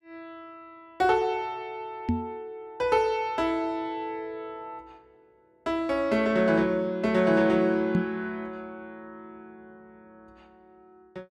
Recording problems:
microphone bump; at 2 s and at 8 s; peak +5 dB vs average level

